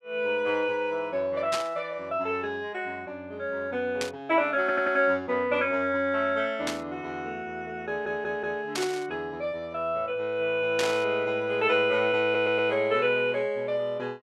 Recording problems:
burst of static; 5 times, first at 1.5 s; peak +1 dB vs average level
audio stuttering; at 4.5 s, at 8 s and at 12 s

